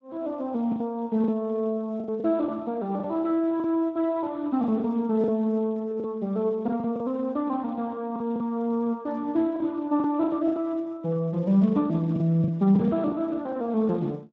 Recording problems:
lossy codec; Speex, log-spectral distance 2 dB
lost packets; 8% of the sound replaced, filled with the last packet

